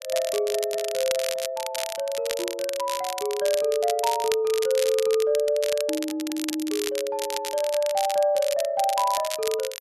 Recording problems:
crackling; vinyl, SNR 8 dB

